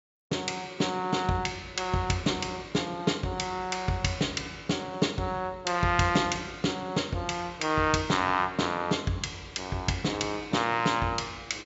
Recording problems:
low-pass filter; nothing above 8 kHz

